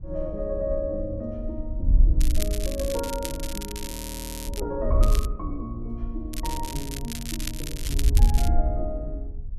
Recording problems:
wind noise; below 58 Hz, SNR -4 dB
crackle; from 2 to 4.5 s, at 5 s and from 6.5 to 8.5 s; loose cable, SNR 4 dB
audio freezing; at 4 s for 0.5 s

